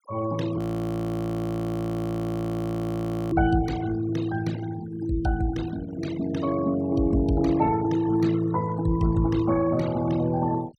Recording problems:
denoising artefacts; signal-to-artefact ratio 17 dB
audio freezing; at 0.5 s for 2.5 s

